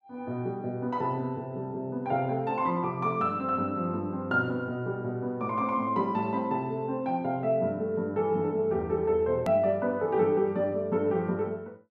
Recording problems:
click at an edit; at 9.5 s

